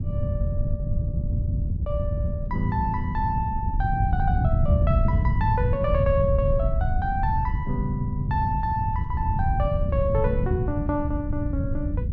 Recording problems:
low-pass filter; nothing above 7.6 kHz
wind on the microphone; below 120 Hz, SNR -2 dB

